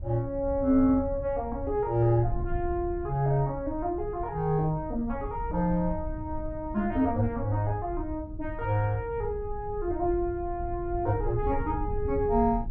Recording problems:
wind noise; below 86 Hz, SNR 10 dB

